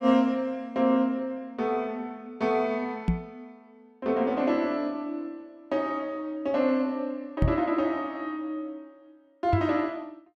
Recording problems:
microphone bump; at 3 s, at 7.5 s and at 9.5 s; peak +7 dB vs average level

